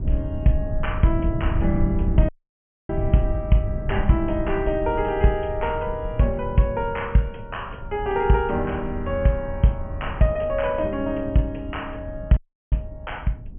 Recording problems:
treble cut off; nothing above 3.2 kHz
rumble; below 100 Hz, SNR 7 dB
dropout; at 2.5 s for 0.5 s and at 12 s

